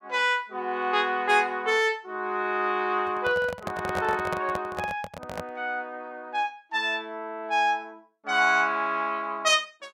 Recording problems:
microphone handling noise; from 3 to 5.5 s; peak -2 dB vs average level

